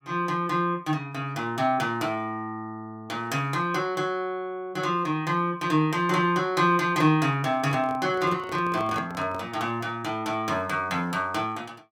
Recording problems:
microphone handling noise; from 7.5 to 9.5 s; peak -8 dB vs average level

